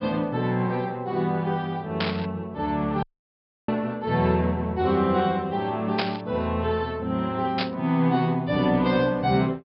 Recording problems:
treble cut off; nothing above 5.3 kHz
static burst; at 2 s, at 6 s and at 7.5 s; peak +2 dB vs average level
dropout; at 3 s for 0.5 s

